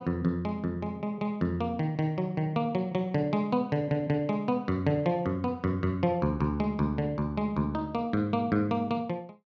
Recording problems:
none

